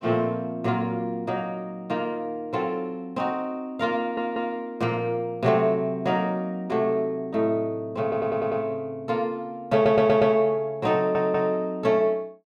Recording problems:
stutter; 4 times, first at 4 s

